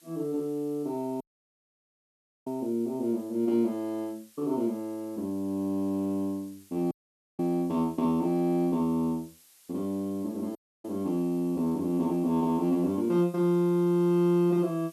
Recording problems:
background hiss; slope +2 dB per octave, SNR 27 dB
dropout; at 1 s for 1.5 s, at 7 s and at 11 s

